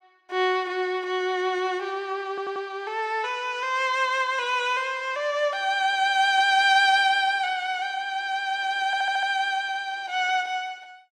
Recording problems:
stutter; at 2.5 s and at 9 s

